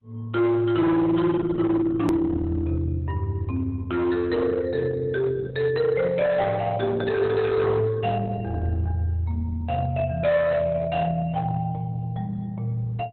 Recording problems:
codec artefacts; Opus, log-spectral distance 2 dB, nothing above 13.3 kHz
distortion; hard clipping, signal-to-distortion ratio 11 dB
edit click; at 2 s

